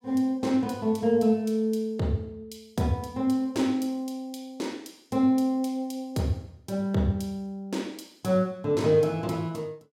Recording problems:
none

